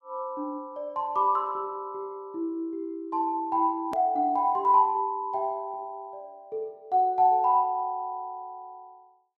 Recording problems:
hard cut with a click; at 4 s

